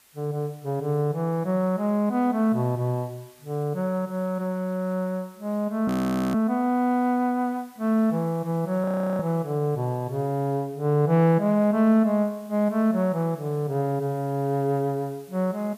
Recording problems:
background hiss; slope 0 dB per octave, SNR 29 dB
audio freezing; at 6 s and at 9 s

